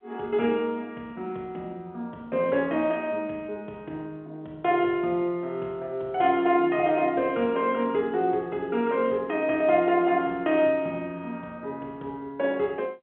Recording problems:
phone line; 190 Hz to 3.5 kHz, G.711

